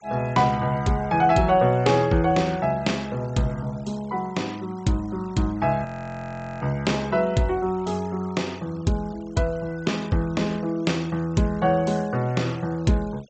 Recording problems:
treble missing; nothing above 8 kHz
noise reduction artefacts; signal-to-artefact ratio 25 dB
audio freezing; at 6 s for 1 s

